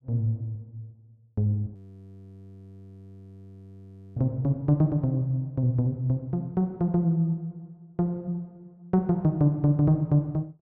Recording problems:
audio freezing; at 2 s for 2.5 s

